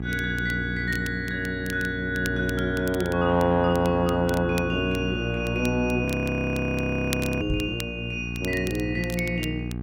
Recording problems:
hum; 60 Hz, harmonics up to 780 Hz, SNR 6 dB
crackle; vinyl, SNR 16 dB
audio freezing; at 6 s for 1.5 s
knock on the microphone; at 7.5 s; peak +1 dB vs average level

